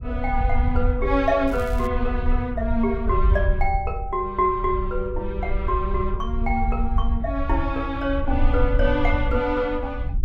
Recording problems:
low-frequency rumble; below 66 Hz, SNR 2 dB
crackling; at 1.5 s; loose cable, SNR 22 dB

